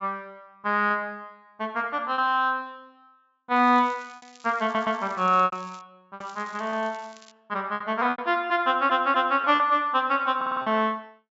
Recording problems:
treble cut off; nothing above 8 kHz
packet loss; 7% of the sound replaced, filled with repeated pitch periods
crackling; from 3.5 to 6 s and from 6 to 7.5 s; loose cable, SNR 27 dB
stutter; at 4.5 s, at 8.5 s and at 10 s

